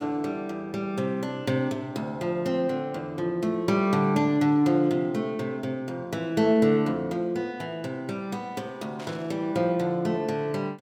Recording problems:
static burst; at 9 s; peak -14 dB vs average level

